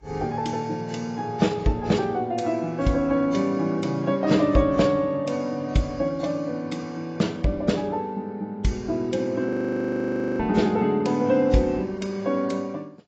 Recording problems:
codec artefacts; AAC, log-spectral distance 2 dB, nothing above 7.3 kHz
frozen audio; at 9.5 s for 1 s

